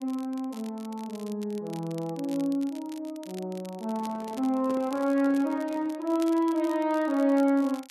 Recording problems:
crackling; vinyl, SNR 22 dB
microphone handling noise; from 4 to 6 s; peak -9 dB vs average level

